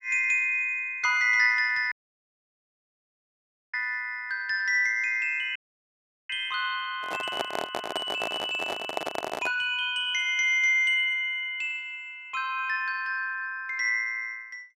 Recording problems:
dropout; at 2 s for 2 s and at 5.5 s for 0.5 s
handling noise; from 7 to 9.5 s; peak +1 dB vs average level

